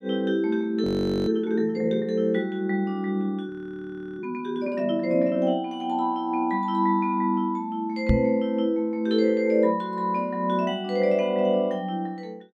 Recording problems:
frozen audio; at 1 s and at 3.5 s for 0.5 s
microphone thump; at 8 s; peak +7 dB vs average level

